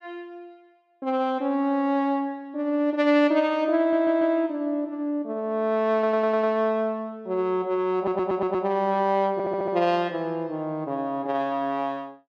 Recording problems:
audio stuttering; 4 times, first at 4 s

